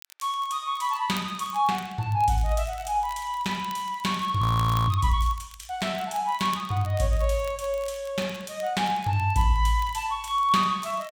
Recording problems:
crackling; vinyl, SNR 22 dB
frozen audio; at 4.5 s

